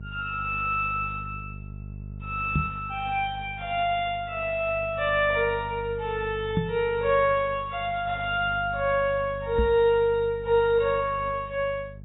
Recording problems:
lossy codec; AAC, log-spectral distance 2 dB, nothing above 3.5 kHz
hum; 50 Hz, harmonics up to 400 Hz, SNR 15 dB
microphone thump; at 2.5 s, at 6.5 s and at 9.5 s; peak +3 dB vs average level

